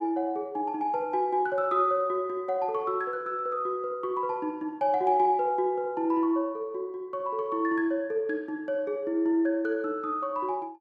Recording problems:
none

